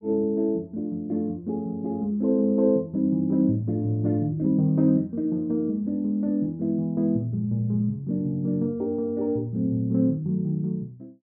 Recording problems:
none

